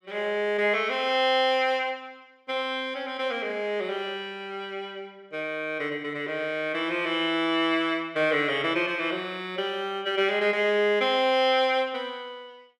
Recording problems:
none

